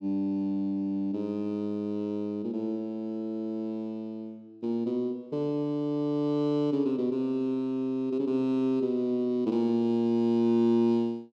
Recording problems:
none

